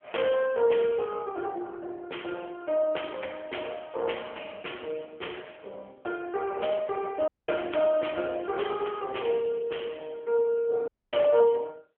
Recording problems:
telephone audio; 320 Hz to 3.3 kHz, AMR-NB
dropout; at 7.5 s and at 11 s

